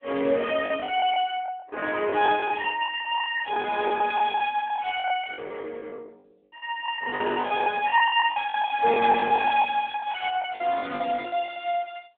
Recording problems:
telephone audio; 300 Hz to 3.5 kHz, AMR-NB
packet loss; 16% of the sound replaced, filled with the last packet

